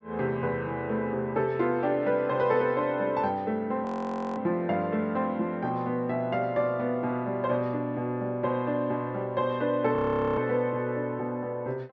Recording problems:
treble cut off; nothing above 7.9 kHz
audio freezing; at 4 s for 0.5 s and at 10 s

